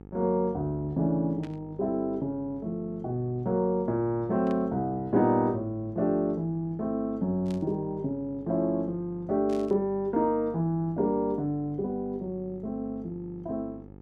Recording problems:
hum; 50 Hz, harmonics up to 950 Hz, SNR 19 dB
static burst; 4 times, first at 1.5 s; peak -15 dB vs average level

